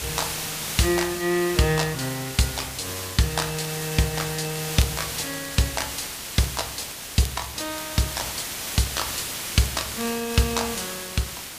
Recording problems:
hiss; slope 0 dB per octave, SNR 4 dB
crackling; vinyl, SNR 21 dB

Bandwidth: 15 kHz